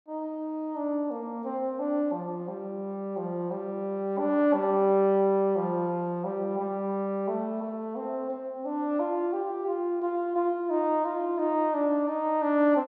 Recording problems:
none

